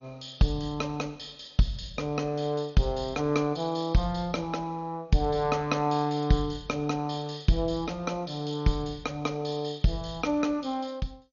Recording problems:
lossy codec; MP2, log-spectral distance 5 dB, nothing above 6.7 kHz

